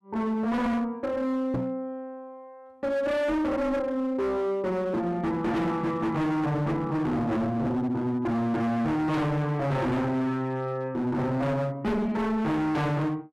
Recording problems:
distorted audio; hard clipping, signal-to-distortion ratio 6 dB
microphone thump; at 1.5 s; peak +1 dB vs average level

